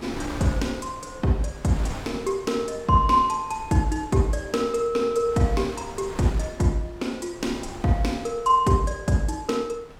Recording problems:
wind noise; below 1.1 kHz, SNR 16 dB

